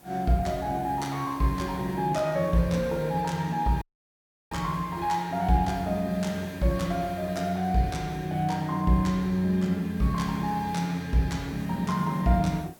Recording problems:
hiss; slope -5 dB per octave, SNR 24 dB
audio cutting out; at 4 s for 0.5 s

